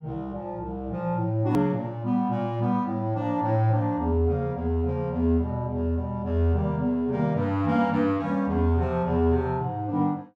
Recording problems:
edit click; at 1.5 s

